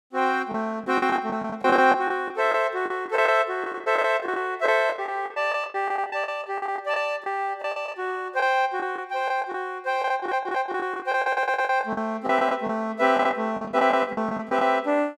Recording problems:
packet loss; 14% of the sound replaced, filled with the last packet
stutter; at 10 s and at 11 s

